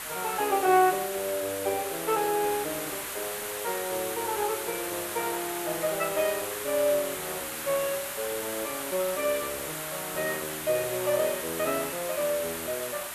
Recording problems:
hiss; SNR 4 dB

